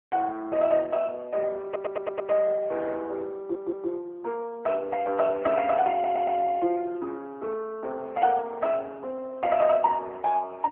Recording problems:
phone line; 280 Hz to 3.3 kHz, AMR-NB
stutter; at 1.5 s, at 3.5 s and at 6 s

